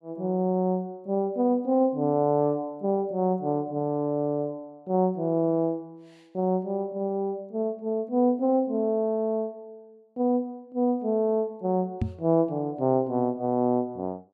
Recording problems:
microphone thump; at 12 s; peak +3 dB vs average level

